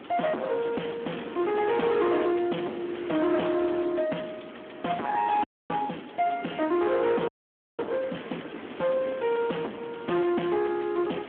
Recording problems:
telephone audio; 260 Hz to 3 kHz, Speex
distortion; soft clipping, signal-to-distortion ratio 5 dB
background hiss; SNR 14 dB
audio freezing; at 5.5 s and at 7.5 s for 0.5 s

